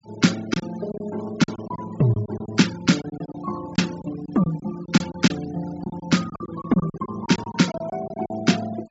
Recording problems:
treble missing; nothing above 8 kHz
denoising artefacts; signal-to-artefact ratio 15 dB
packet loss; 12% of the sound replaced, filled with silence

